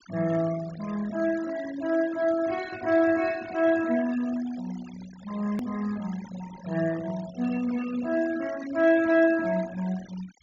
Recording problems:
low-pass filter; nothing above 7.2 kHz
denoising artefacts; signal-to-artefact ratio 18 dB
edit click; at 5.5 s

